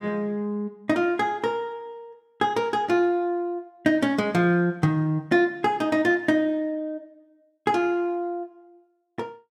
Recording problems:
none

